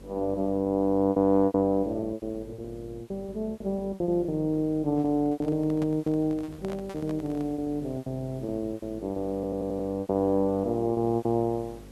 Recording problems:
hum; 50 Hz, harmonics up to 550 Hz, SNR 20 dB
background hiss; slope -3 dB per octave, SNR 29 dB
packet loss; 14% of the sound replaced, filled with repeated pitch periods
microphone handling noise; from 5 to 7.5 s; peak -7 dB vs average level
audio stuttering; at 9.5 s

